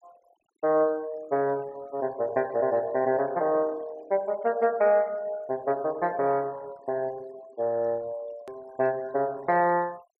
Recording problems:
denoising artefacts; signal-to-artefact ratio 25 dB
edit click; at 8.5 s

